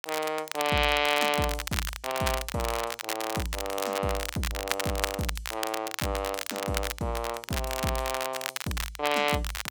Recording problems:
crackling; vinyl, SNR 4 dB

